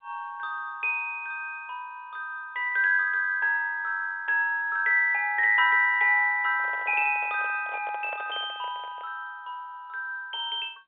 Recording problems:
phone line; 170 Hz to 3.6 kHz, G.711
microphone handling noise; from 6.5 to 9 s; peak -10 dB vs average level

